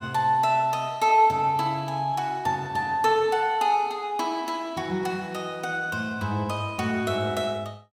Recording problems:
none

